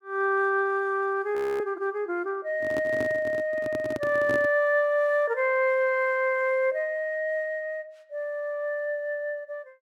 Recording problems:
frozen audio; at 1.5 s
handling noise; from 2.5 to 4.5 s; peak -4 dB vs average level

